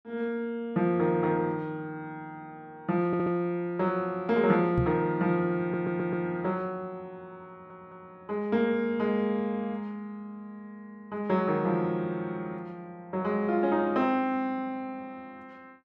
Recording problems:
audio stuttering; at 3 s, at 5.5 s and at 7.5 s
knock on the microphone; at 5 s; peak +5 dB vs average level

